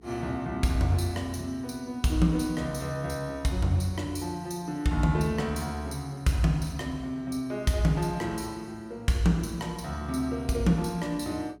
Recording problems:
electrical hum; 60 Hz, harmonics up to 420 Hz, SNR 27 dB

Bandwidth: 16.5 kHz